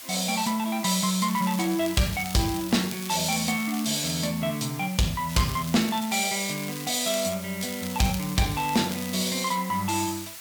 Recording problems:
distortion; soft clipping, signal-to-distortion ratio 10 dB
hiss; slope +2 dB per octave, SNR 13 dB
crackling; from 1.5 to 4 s, from 5.5 to 7.5 s and from 7.5 to 9.5 s; loose cable, SNR 13 dB

